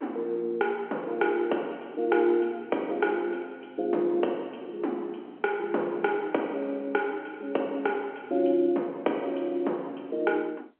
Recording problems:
telephone audio; 240 Hz to 3.2 kHz, G.711

